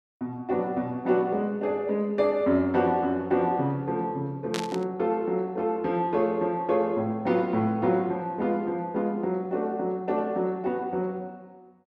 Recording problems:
static burst; at 4.5 s; peak -1 dB vs average level

